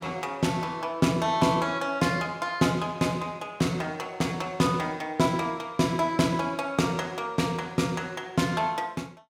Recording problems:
none

